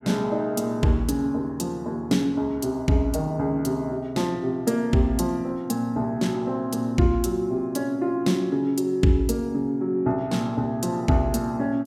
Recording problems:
none

